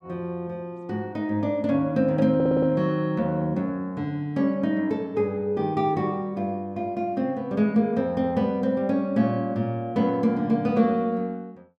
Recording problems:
stutter; at 2.5 s

